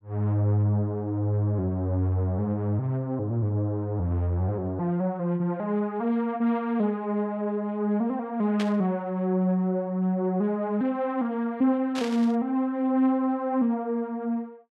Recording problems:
static burst; at 8.5 s and at 12 s; peak -4 dB vs average level

